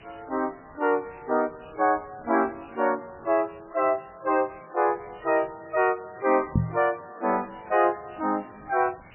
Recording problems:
lossy codec; MP3, log-spectral distance 17 dB, nothing above 2.7 kHz
background hiss; SNR 25 dB
knock on the microphone; at 6.5 s; peak +6 dB vs average level

